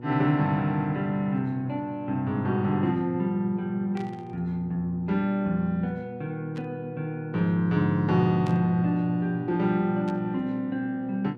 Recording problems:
hum; 60 Hz, harmonics up to 960 Hz, SNR 16 dB
static burst; 4 times, first at 4 s; peak -13 dB vs average level

